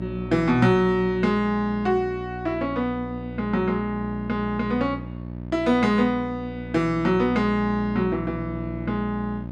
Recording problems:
hum; 60 Hz, harmonics up to 960 Hz, SNR 10 dB

